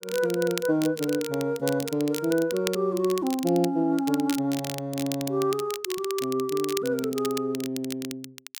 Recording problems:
crackling; vinyl, SNR 11 dB

